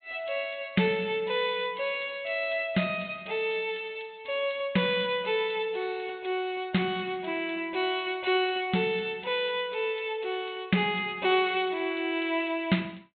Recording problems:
treble missing; nothing above 4 kHz

